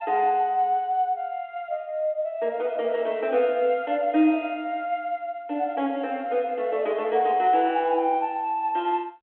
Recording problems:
phone line; 260 Hz to 3.7 kHz, G.726

